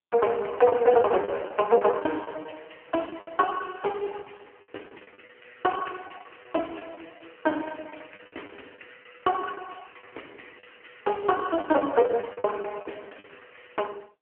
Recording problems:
phone line; 260 Hz to 3 kHz, AMR-NB
packet loss; 13% of the sound replaced, filled with the last packet

